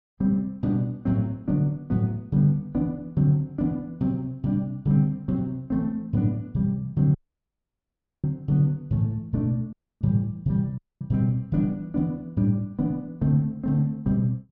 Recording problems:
dropout; at 7 s for 1 s, at 9.5 s and at 11 s

